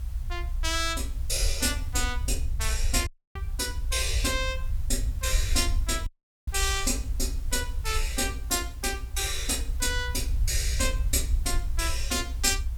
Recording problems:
hiss; SNR 24 dB
rumble; below 62 Hz, SNR 3 dB
dropout; at 3 s and at 6 s

